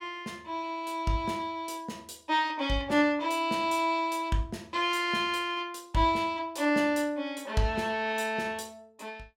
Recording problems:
none

